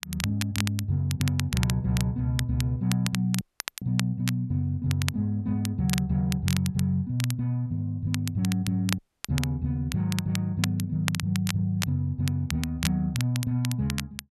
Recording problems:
crackling; vinyl, SNR 9 dB
dropout; at 3.5 s and at 9 s

